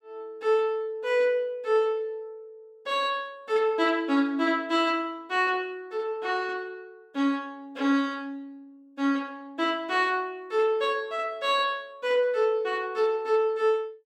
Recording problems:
none

